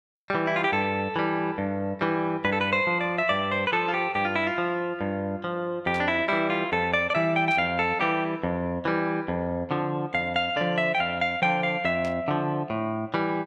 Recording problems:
burst of static; at 6 s, at 7.5 s and at 12 s; peak -13 dB vs average level

